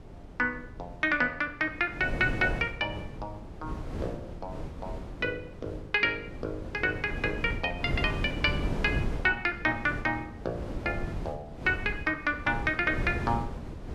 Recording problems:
wind noise; below 310 Hz, SNR 8 dB

